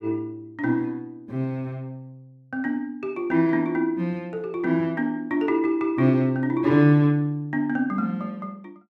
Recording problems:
none

